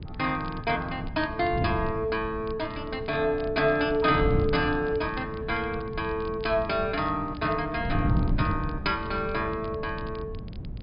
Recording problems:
low-pass filter; nothing above 5 kHz
wind on the microphone; below 180 Hz, SNR 7 dB
crackle; vinyl, SNR 25 dB

